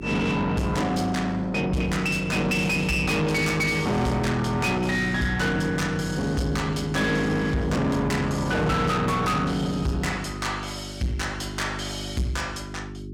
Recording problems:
distorted audio; soft clipping, signal-to-distortion ratio 7 dB
electrical hum; 50 Hz, harmonics up to 400 Hz, SNR 11 dB

